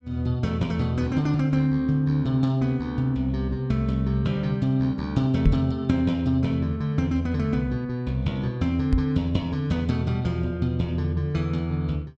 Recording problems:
microphone bump; at 5.5 s and at 9 s; peak +7 dB vs average level

